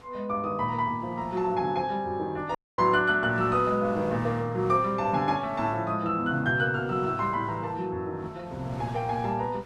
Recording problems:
wind noise; below 1.5 kHz, SNR 22 dB
dropout; at 2.5 s

